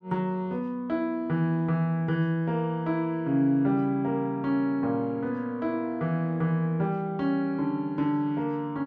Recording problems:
none

